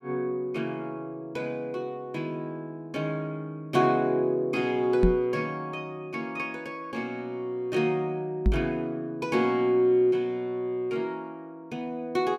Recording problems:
knock on the microphone; at 5 s and at 8.5 s; peak +8 dB vs average level

